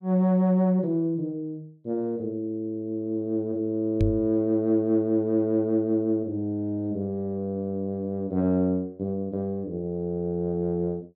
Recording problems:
microphone thump; at 4 s; peak +5 dB vs average level

